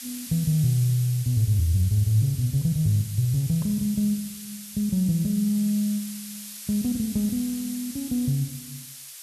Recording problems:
hiss; slope +6 dB per octave, SNR 13 dB

